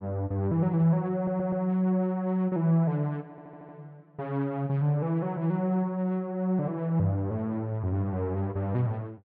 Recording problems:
stutter; at 1 s and at 3.5 s

